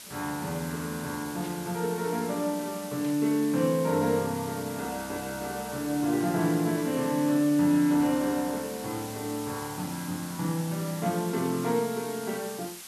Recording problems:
background hiss; slope +1 dB per octave, SNR 13 dB
static burst; at 1.5 s and at 3 s; peak -13 dB vs average level

